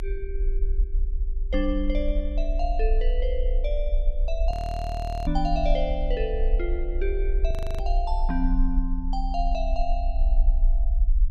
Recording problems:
rumble; below 44 Hz, strongest tone 30 Hz, SNR -3 dB
frozen audio; at 4.5 s for 1 s and at 7.5 s

